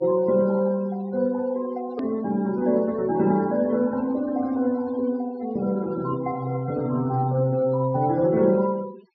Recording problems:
treble missing; nothing above 5.5 kHz
denoising artefacts; signal-to-artefact ratio 24 dB
hard cut with a click; at 2 s

